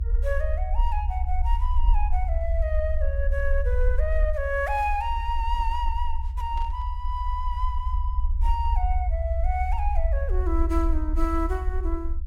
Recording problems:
rumble; below 68 Hz, SNR -3 dB
burst of static; at 6.5 s; peak -15 dB vs average level

